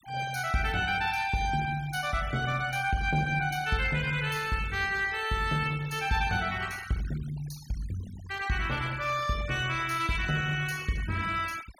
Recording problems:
denoising artefacts; signal-to-artefact ratio 17 dB

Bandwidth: 18 kHz